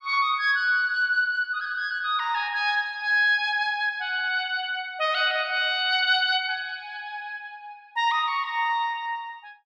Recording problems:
none

